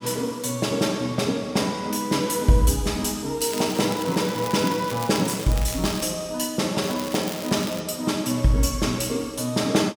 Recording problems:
crackle; from 3.5 to 6 s and at 7 s; loose cable, SNR 12 dB

